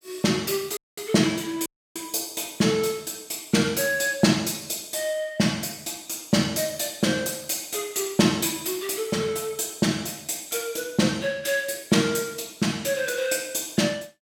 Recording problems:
audio cutting out; at 1 s and at 1.5 s

